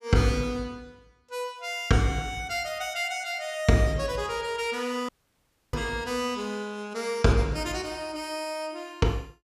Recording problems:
dropout; at 5 s for 0.5 s

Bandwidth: 15 kHz